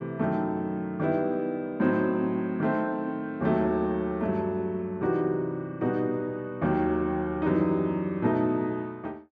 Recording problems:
none

